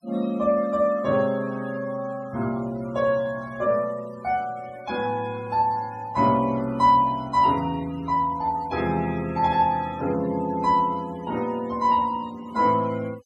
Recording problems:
denoising artefacts; signal-to-artefact ratio 22 dB

